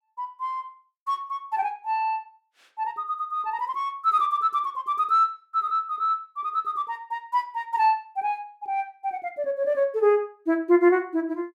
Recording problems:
none

